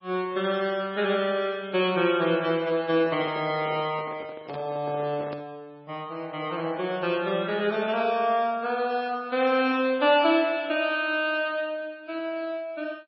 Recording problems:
codec artefacts; MP3, log-spectral distance 2 dB, nothing above 4.6 kHz
handling noise; from 3 to 5.5 s; peak -9 dB vs average level

